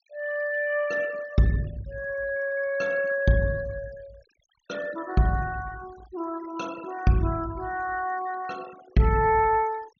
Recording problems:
treble missing; nothing above 6.7 kHz
denoising artefacts; signal-to-artefact ratio 22 dB

